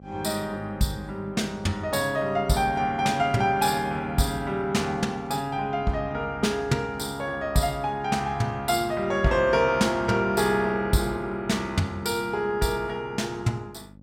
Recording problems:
electrical hum; 50 Hz, harmonics up to 650 Hz, SNR 20 dB

